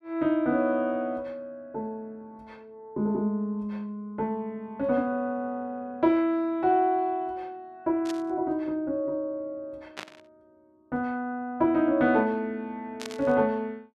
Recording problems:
static burst; at 8 s, at 10 s and at 13 s; peak -5 dB vs average level

